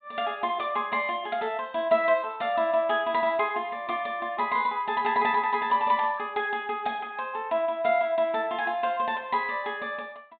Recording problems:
low-pass filter; nothing above 4 kHz

